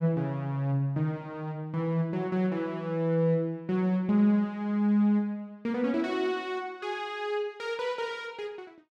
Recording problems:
none

